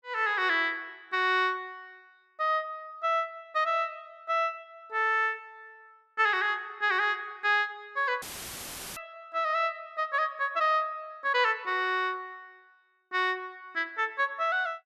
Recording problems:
audio cutting out; at 8 s for 0.5 s; filled with static

